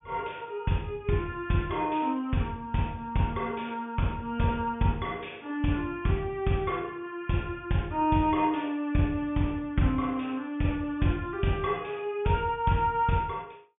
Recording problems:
low-pass filter; nothing above 3.5 kHz

